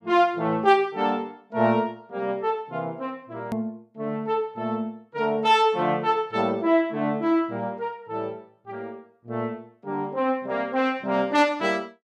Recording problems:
hard cut with a click; at 3.5 s

